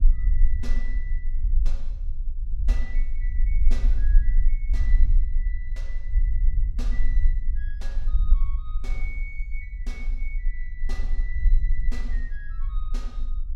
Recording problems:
rumble; below 40 Hz, strongest tone 20 Hz, SNR -17 dB

